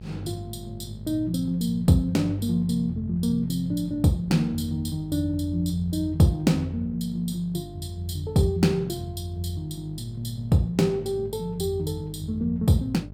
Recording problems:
hum; 50 Hz, harmonics up to 650 Hz, SNR 16 dB

